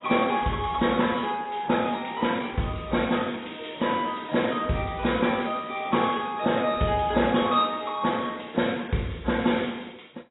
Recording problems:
codec artefacts; MP2, then AAC, log-spectral distance 7 dB, nothing above 3.8 kHz

